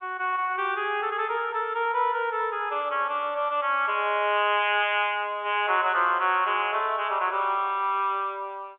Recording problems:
telephone audio; 320 Hz to 3.7 kHz, G.711

